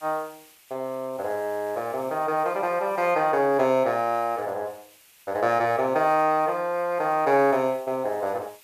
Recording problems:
background hiss; SNR 27 dB

